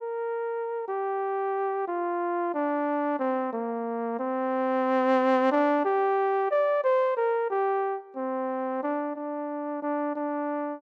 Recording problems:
none

